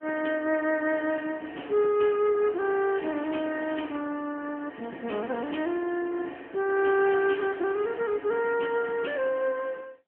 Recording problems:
phone line; 220 Hz to 3.2 kHz, AMR-NB

